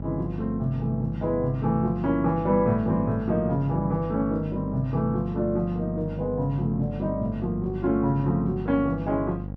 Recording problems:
hum; 50 Hz, harmonics up to 800 Hz, SNR 9 dB

